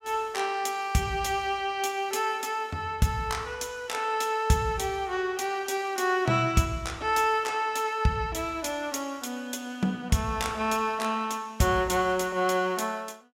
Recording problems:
none

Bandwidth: 16 kHz